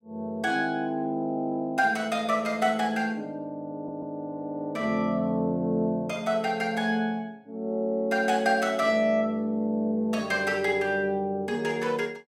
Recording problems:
stutter; at 3.5 s

